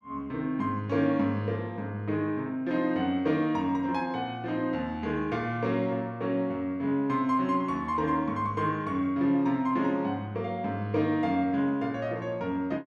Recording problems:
none

